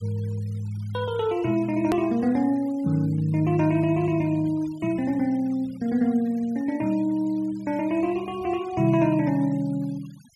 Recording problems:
denoising artefacts; signal-to-artefact ratio 25 dB
click at an edit; at 2 s

